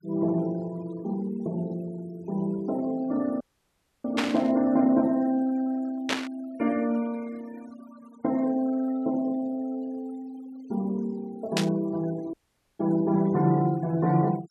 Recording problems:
noise reduction artefacts; signal-to-artefact ratio 23 dB
audio cutting out; at 3.5 s for 0.5 s and at 12 s
static burst; at 4 s, at 6 s and at 12 s; peak +4 dB vs average level

